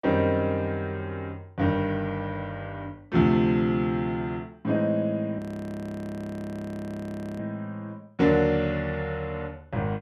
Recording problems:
frozen audio; at 5.5 s for 2 s

